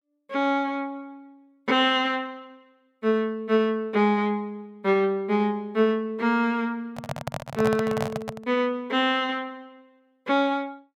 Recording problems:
microphone handling noise; from 7 to 8.5 s; peak 0 dB vs average level

